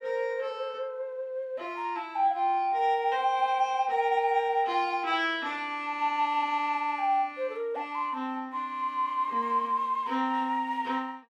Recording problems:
none

